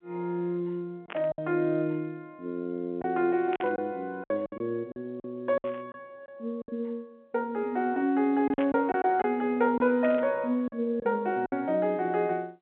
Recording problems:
telephone audio; 190 Hz to 3.4 kHz, G.711
packet loss; 7% of the sound replaced, filled with silence
burst of static; 5 times, first at 1 s; peak -7 dB vs average level

